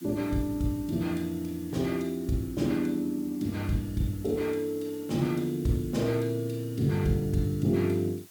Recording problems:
hiss; slope +1 dB per octave, SNR 21 dB

